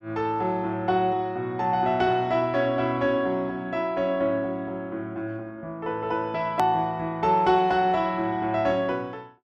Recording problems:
click at an edit; at 6.5 s

